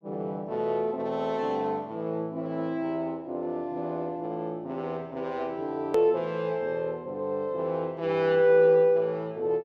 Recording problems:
edit click; at 6 s

